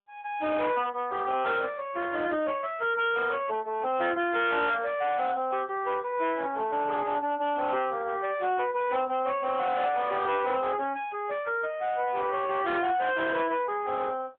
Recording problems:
phone line; 260 Hz to 3.6 kHz, AMR-NB
distortion; hard clipping, signal-to-distortion ratio 11 dB

